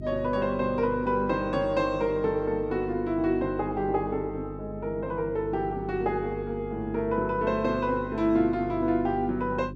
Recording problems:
hum; 50 Hz, harmonics up to 400 Hz, SNR 12 dB

